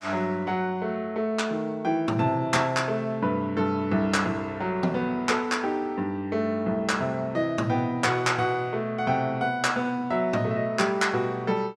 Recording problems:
none

